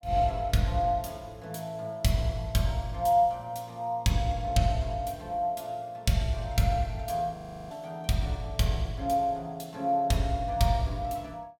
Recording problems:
frozen audio; at 7.5 s

